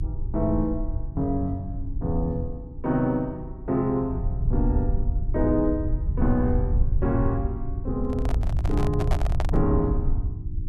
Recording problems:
hum; 60 Hz, harmonics up to 360 Hz, SNR 19 dB
rumble; below 84 Hz, SNR 1 dB
handling noise; from 8 to 9.5 s; peak 0 dB vs average level

